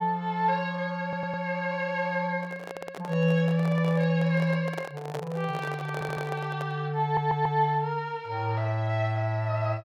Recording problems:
audio stuttering; 4 times, first at 1 s
microphone handling noise; from 2.5 to 7 s; peak -3 dB vs average level

